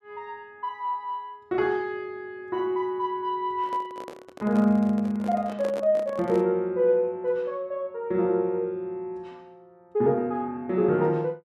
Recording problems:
microphone handling noise; from 3.5 to 6.5 s; peak -6 dB vs average level

